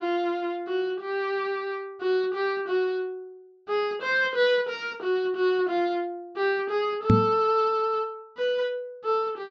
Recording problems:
treble cut off; nothing above 8 kHz
microphone bump; at 7 s; peak +10 dB vs average level

